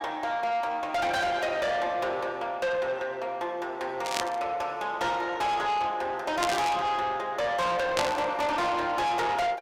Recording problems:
distorted audio; soft clipping, signal-to-distortion ratio 7 dB
burst of static; at 4 s, at 6.5 s and at 8 s; peak +4 dB vs average level

